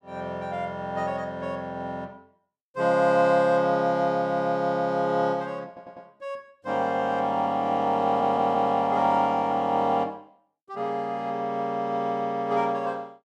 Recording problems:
audio stuttering; at 5.5 s and at 8 s

